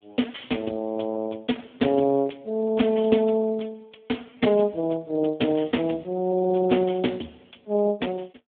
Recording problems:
telephone audio; 110 Hz to 3.5 kHz, Speex

